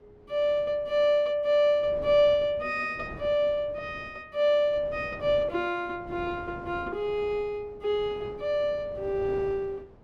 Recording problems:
wind noise; below 500 Hz, SNR 18 dB

